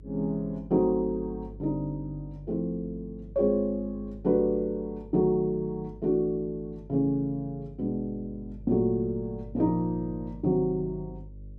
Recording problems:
hum; 50 Hz, harmonics up to 450 Hz, SNR 17 dB

